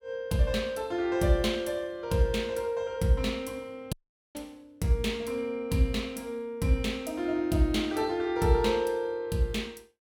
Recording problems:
dropout; at 4 s

